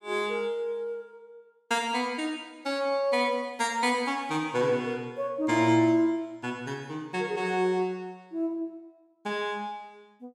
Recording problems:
none

